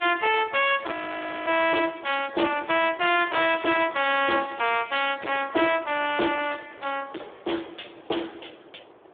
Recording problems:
phone line; 260 Hz to 3.5 kHz, Speex
distorted audio; hard clipping, uneven, signal-to-distortion ratio 7 dB
wind on the microphone; below 950 Hz, SNR 22 dB
frozen audio; at 1 s for 0.5 s

